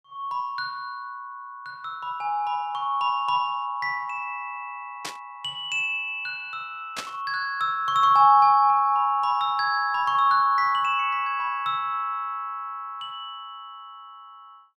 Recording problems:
static burst; at 5 s and at 7 s; peak -3 dB vs average level

